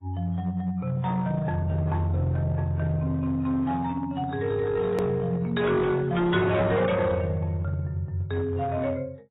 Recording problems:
lossy compression; AAC, then AAC, log-spectral distance 2 dB, nothing above 3.4 kHz
distorted audio; hard clipping, uneven, signal-to-distortion ratio 10 dB
hard cut with a click; at 5 s

